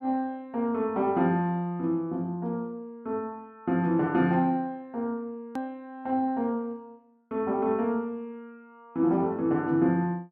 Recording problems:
hard cut with a click; at 5.5 s

